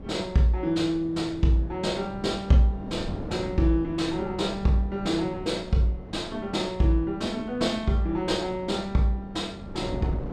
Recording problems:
wind on the microphone; below 370 Hz, SNR 13 dB

